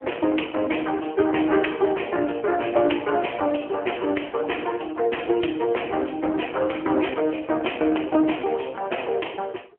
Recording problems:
phone line; 260 Hz to 3.2 kHz, AMR-NB

